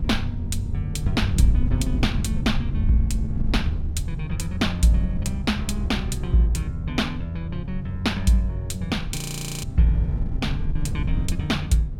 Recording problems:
low-frequency rumble; below 120 Hz, SNR 9 dB
wind on the microphone; below 100 Hz, SNR 6 dB
frozen audio; at 9 s

